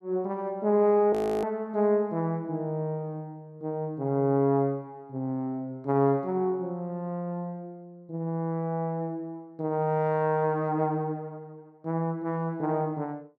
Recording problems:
frozen audio; at 1 s

